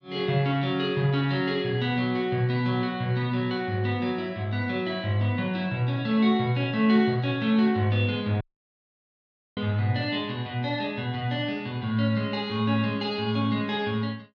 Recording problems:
audio cutting out; at 8.5 s for 1 s

